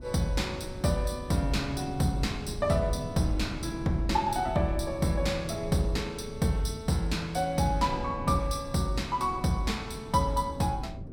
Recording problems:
wind noise; below 210 Hz, SNR 11 dB

